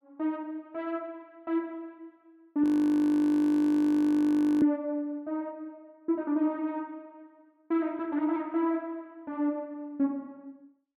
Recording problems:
audio freezing; at 2.5 s for 2 s

